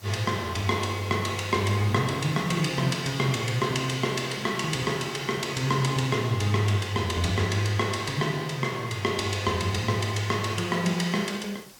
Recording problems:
background hiss; slope -1 dB per octave, SNR 22 dB

